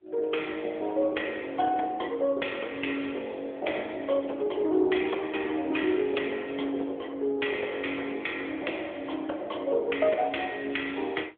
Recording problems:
telephone audio; 280 Hz to 3.4 kHz, AMR-NB

